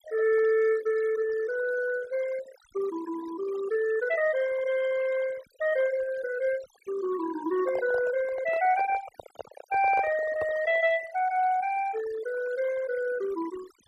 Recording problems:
noise reduction artefacts; signal-to-artefact ratio 16 dB
handling noise; from 7.5 to 11 s; peak -3 dB vs average level

